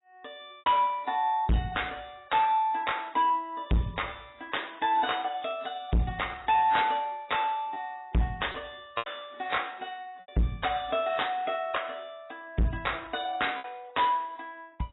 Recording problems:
lossy compression; AAC, log-spectral distance 6 dB, nothing above 3.8 kHz
distortion; hard clipping, signal-to-distortion ratio 6 dB
packet loss; 2% of the sound replaced, filled with repeated pitch periods

